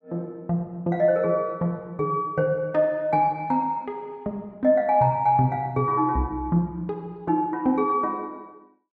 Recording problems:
none

